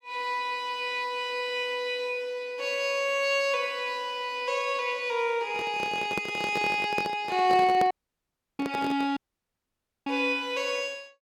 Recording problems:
handling noise; from 5.5 to 9 s; peak +1 dB vs average level
dropout; at 8 s for 0.5 s and at 9 s for 1 s

